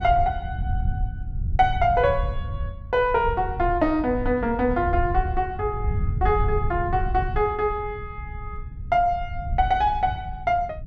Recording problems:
low-frequency rumble; below 94 Hz, SNR 7 dB

